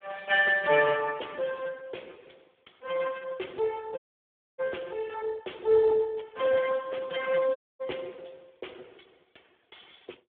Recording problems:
telephone audio; 300 Hz to 2.6 kHz, Speex
dropout; at 4 s for 0.5 s and at 7.5 s

